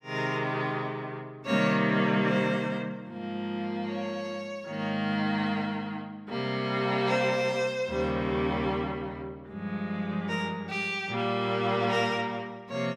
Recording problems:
none

